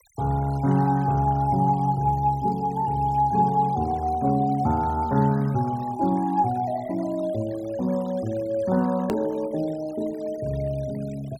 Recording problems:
denoising artefacts; signal-to-artefact ratio 23 dB
click at an edit; at 9 s

